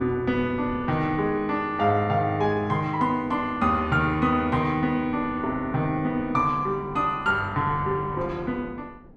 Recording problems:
wind noise; below 420 Hz, SNR 18 dB

